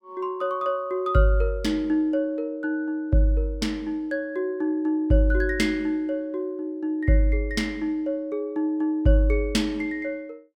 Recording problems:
none

